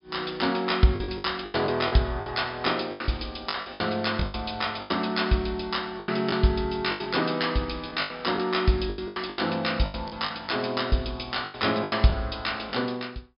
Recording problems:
treble missing; nothing above 5.5 kHz
packet loss; 13% of the sound replaced, filled with the last packet

